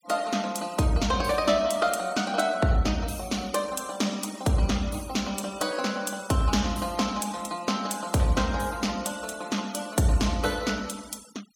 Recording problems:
noise reduction artefacts; signal-to-artefact ratio 19 dB

